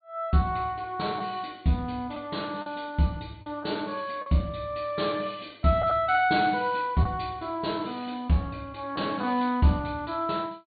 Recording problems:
treble missing; nothing above 4.6 kHz
lost packets; 2% of the sound replaced, filled with the last packet

